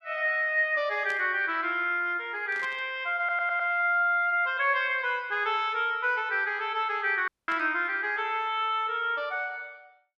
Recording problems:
static burst; at 1 s, at 2.5 s and at 7.5 s; peak -13 dB vs average level
stutter; at 3 s
dropout; at 7.5 s

